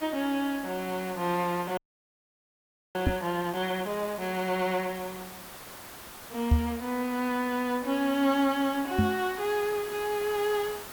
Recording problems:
hiss; SNR 13 dB
frozen audio; at 2 s for 1 s
knock on the microphone; at 3 s, at 6.5 s and at 9 s; peak +10 dB vs average level

